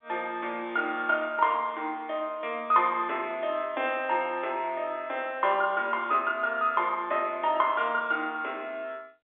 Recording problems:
phone line; 300 Hz to 3.7 kHz, G.711

